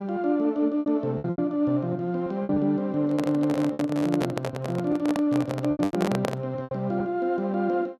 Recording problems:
packet loss; 9% of the sound replaced, filled with repeated pitch periods
handling noise; from 3 to 6.5 s; peak +1 dB vs average level

